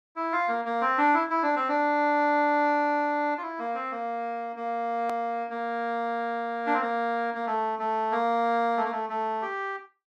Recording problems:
edit click; at 5 s

